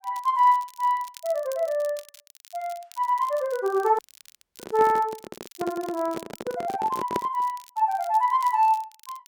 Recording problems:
crackle; vinyl, SNR 23 dB
handling noise; from 4 to 7.5 s; peak 0 dB vs average level
dropout; at 4 s for 0.5 s

